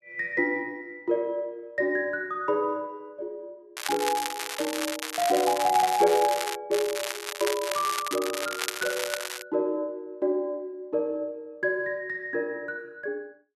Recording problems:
crackling; from 4 to 6.5 s and from 6.5 to 9.5 s; loose cable, SNR 4 dB

